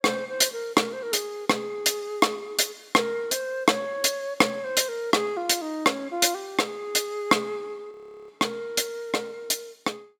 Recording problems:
audio freezing; at 8 s

